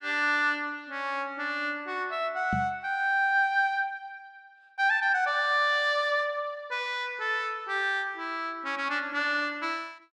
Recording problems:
microphone thump; at 2.5 s; peak 0 dB vs average level

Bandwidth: 12.5 kHz